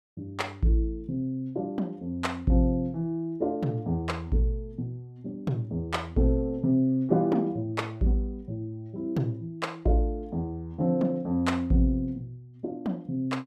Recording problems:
none

